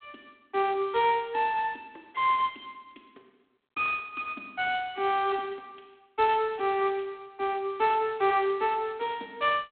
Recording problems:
phone line; 240 Hz to 3.7 kHz, G.726

